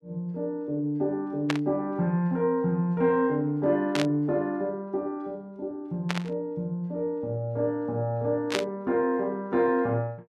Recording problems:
static burst; 4 times, first at 1.5 s; peak +3 dB vs average level

